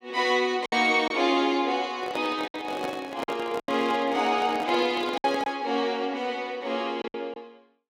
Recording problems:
lost packets; 6% of the sound replaced, filled with silence
microphone handling noise; from 2 to 5.5 s; peak -4 dB vs average level

